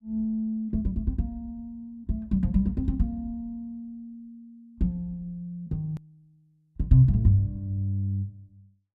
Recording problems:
hard cut with a click; at 6 s

